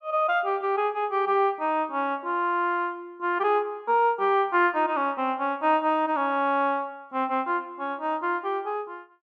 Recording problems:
none

